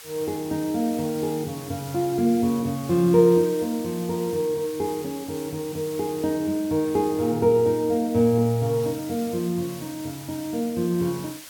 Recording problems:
background hiss; slope +1 dB per octave, SNR 17 dB

